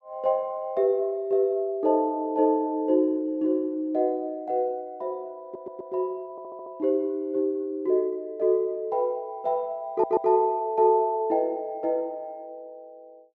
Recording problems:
audio stuttering; at 5.5 s, at 6.5 s and at 10 s

